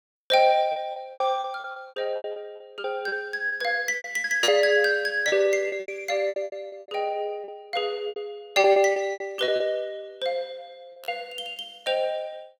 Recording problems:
lost packets; 15% of the sound replaced, filled with repeated pitch periods

